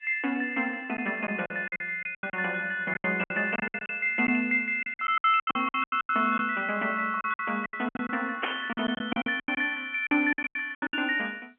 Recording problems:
telephone audio; 220 Hz to 3.2 kHz, G.711
lost packets; 16% of the sound replaced, filled with silence
burst of static; at 8.5 s; peak +3 dB vs average level

